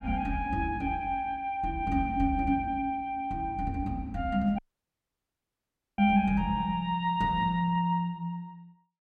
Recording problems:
audio cutting out; at 4.5 s for 1.5 s

